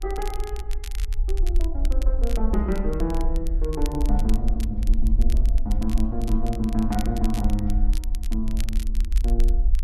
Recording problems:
hum; 50 Hz, harmonics up to 1 kHz, SNR 26 dB
rumble; below 48 Hz, SNR -3 dB
crackling; vinyl, SNR 14 dB

